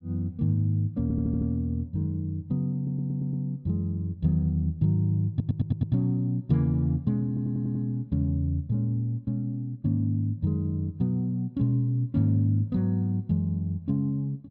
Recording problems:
audio stuttering; 4 times, first at 1 s

